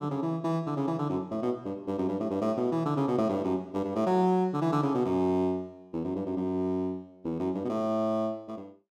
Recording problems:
none

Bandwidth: 14 kHz